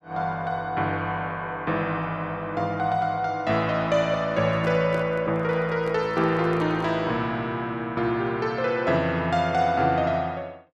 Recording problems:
handling noise; from 4.5 to 7 s; peak -7 dB vs average level

